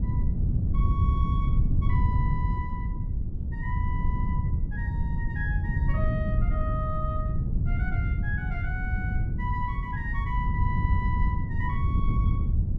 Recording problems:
wind noise; below 120 Hz, SNR -9 dB

